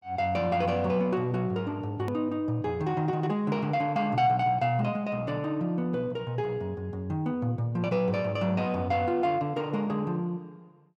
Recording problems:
edit click; at 2 s

